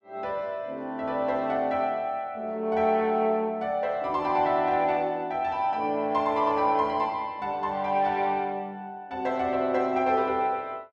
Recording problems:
none

